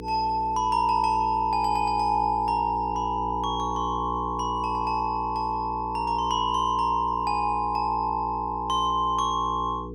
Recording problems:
hum; 60 Hz, harmonics up to 480 Hz, SNR 11 dB

